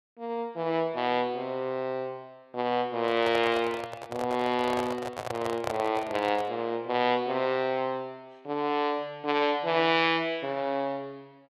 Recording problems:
handling noise; from 3 to 6.5 s; peak +1 dB vs average level

